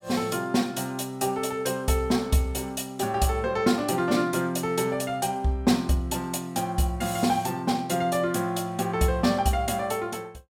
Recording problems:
none

